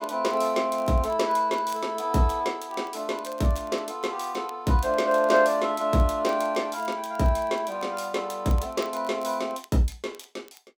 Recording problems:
crackle; vinyl, SNR 27 dB

